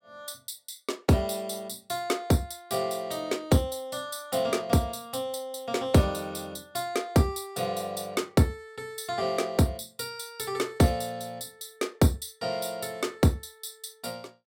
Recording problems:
none

